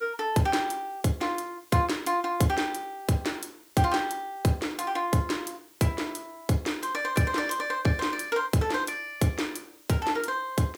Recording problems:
hiss; slope +1 dB per octave, SNR 26 dB

